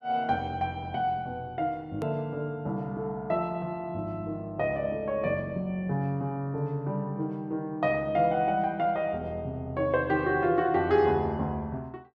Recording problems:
edit click; at 2 s

